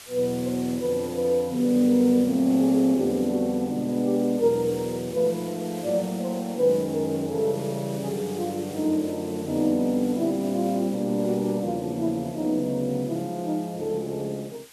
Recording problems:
background hiss; slope +1 dB per octave, SNR 19 dB

